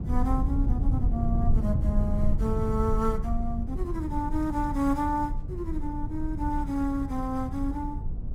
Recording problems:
rumble; below 96 Hz, SNR 0 dB

